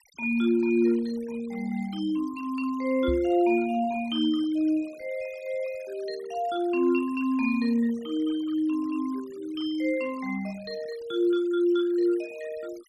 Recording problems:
noise reduction artefacts; signal-to-artefact ratio 23 dB
knock on the microphone; at 3 s; peak -3 dB vs average level

